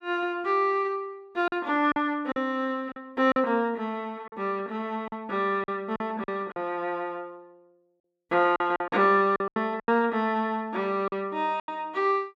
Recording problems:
lost packets; 8% of the sound replaced, filled with silence

